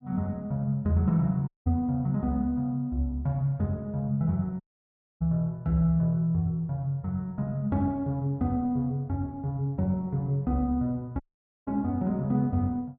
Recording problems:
dropout; at 1.5 s, at 4.5 s for 0.5 s and at 11 s

